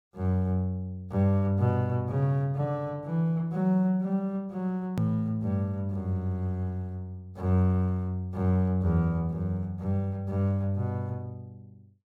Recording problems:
edit click; at 5 s

